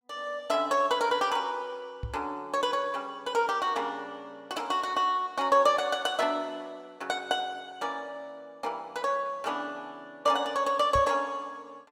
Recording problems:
knock on the microphone; at 2 s and at 11 s; peak -2 dB vs average level

